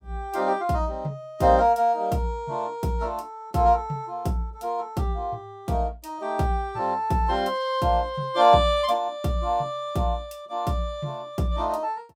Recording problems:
none

